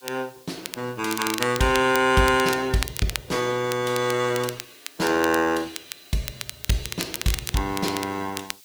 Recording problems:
codec artefacts; Opus, log-spectral distance 4 dB, nothing above 19 kHz
hiss; slope +4 dB per octave, SNR 25 dB
crackling; vinyl, SNR 10 dB

